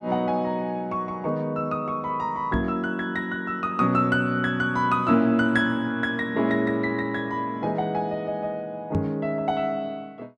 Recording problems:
knock on the microphone; at 2.5 s and at 9 s; peak +1 dB vs average level

